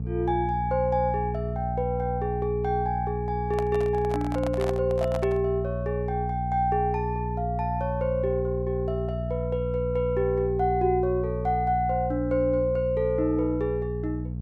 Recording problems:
electrical hum; 60 Hz, harmonics up to 420 Hz, SNR 5 dB
handling noise; from 3.5 to 5.5 s; peak -3 dB vs average level

